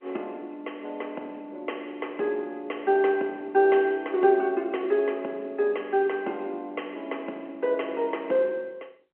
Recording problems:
phone line; 240 Hz to 3.1 kHz, G.711

